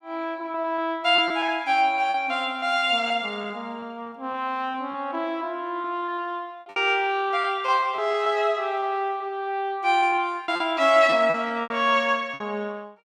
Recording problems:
packet loss; 9% of the sound replaced, filled with repeated pitch periods

